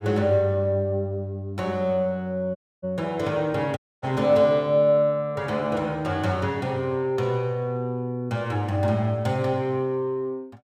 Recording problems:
dropout; at 2.5 s and at 4 s

